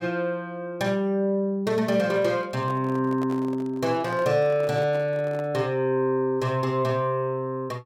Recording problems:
handling noise; from 2 to 5.5 s; peak -9 dB vs average level

